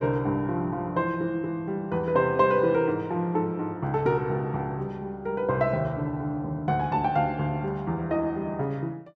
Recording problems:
none

